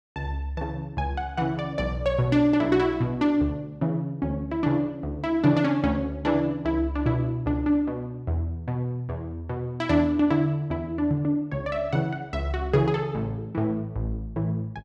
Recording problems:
none

